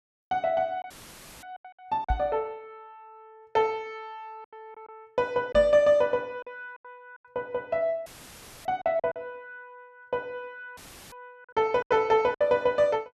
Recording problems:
lost packets; 8% of the sound replaced, filled with silence
audio cutting out; at 1 s for 0.5 s, at 8 s for 0.5 s and at 11 s; filled with static
knock on the microphone; at 2 s and at 5.5 s; peak +1 dB vs average level

